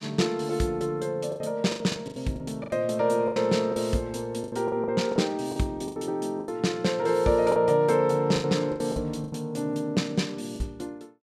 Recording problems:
lost packets; 12% of the sound replaced, filled with the last packet

